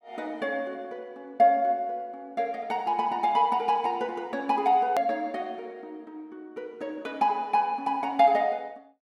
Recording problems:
hard cut with a click; at 5 s

